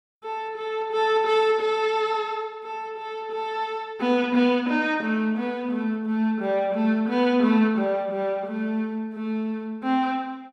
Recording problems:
none

